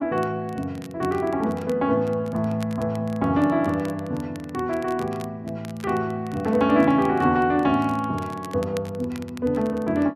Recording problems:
crackling; vinyl, SNR 23 dB

